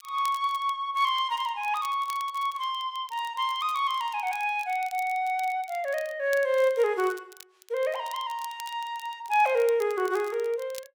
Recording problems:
crackling; vinyl, SNR 21 dB

